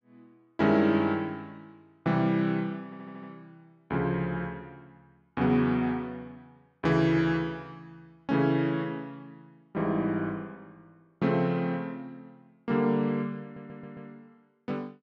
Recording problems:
stutter; at 3 s and at 13 s

